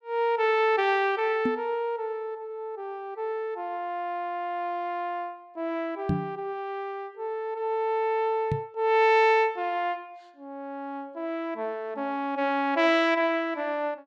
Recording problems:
microphone bump; at 1.5 s, at 6 s and at 8.5 s; peak +4 dB vs average level

